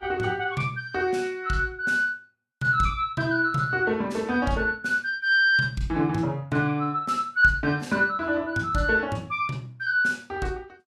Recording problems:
lossy codec; Vorbis, log-spectral distance 2 dB, nothing above 12.3 kHz

